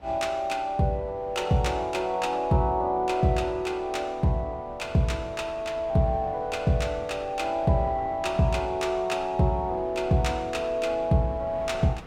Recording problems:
wind noise; below 770 Hz, SNR 21 dB

